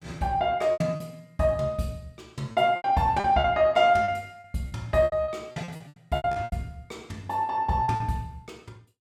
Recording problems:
lost packets; 13% of the sound replaced, filled with repeated pitch periods

